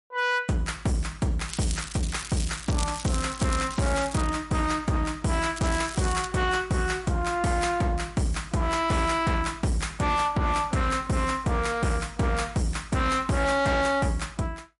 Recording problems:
lossy compression; MP3, log-spectral distance 5 dB, nothing above 11 kHz
distorted audio; hard clipping, signal-to-distortion ratio 11 dB
crackling; from 1.5 to 4.5 s and at 5.5 s; loose cable, SNR 11 dB

